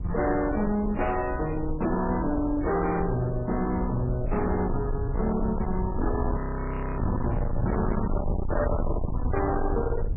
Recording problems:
codec artefacts; MP3, log-spectral distance 2 dB, nothing above 2.8 kHz
distorted audio; hard clipping, signal-to-distortion ratio 6 dB
low-frequency rumble; below 160 Hz, SNR 3 dB
burst of static; at 1.5 s; peak -15 dB vs average level
frozen audio; at 6.5 s for 0.5 s

